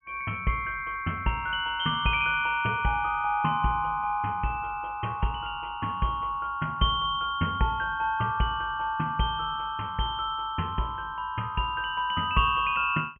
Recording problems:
treble cut off; nothing above 3.2 kHz

